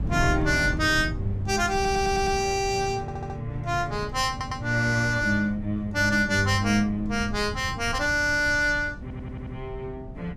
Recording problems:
wind noise; below 140 Hz, SNR 11 dB
stutter; 4 times, first at 2 s

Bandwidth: 15.5 kHz